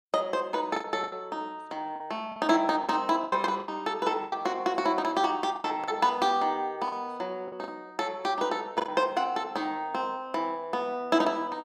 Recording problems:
packet loss; 7% of the sound replaced, filled with the last packet

